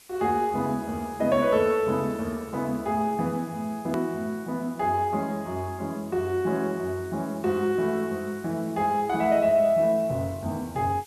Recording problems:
background hiss; slope +1 dB per octave, SNR 24 dB
click at an edit; at 4 s

